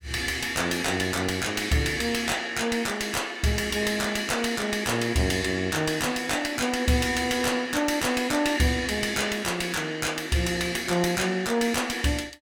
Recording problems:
distortion; soft clipping, signal-to-distortion ratio 10 dB

